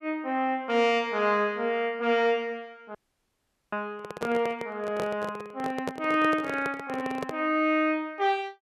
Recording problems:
dropout; at 3 s for 1 s
handling noise; from 4 to 7.5 s; peak -1 dB vs average level

